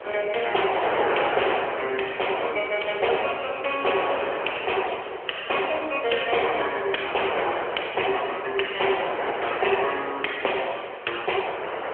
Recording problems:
phone line; 340 Hz to 3.2 kHz, AMR-NB
wind on the microphone; below 1.5 kHz, SNR 6 dB

